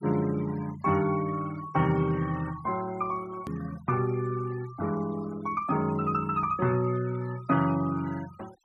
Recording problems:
denoising artefacts; signal-to-artefact ratio 20 dB
hard cut with a click; at 3.5 s

